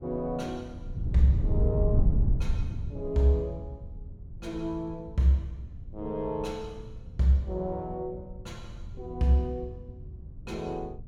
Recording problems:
wind noise; below 110 Hz, SNR 4 dB

